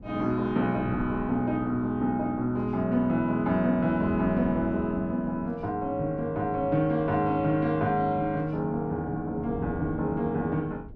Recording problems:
wind noise; below 200 Hz, SNR 16 dB

